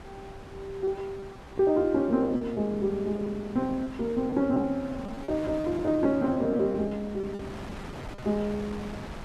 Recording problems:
wind noise; below 980 Hz, SNR 15 dB
packet loss; 10% of the sound replaced, filled with repeated pitch periods

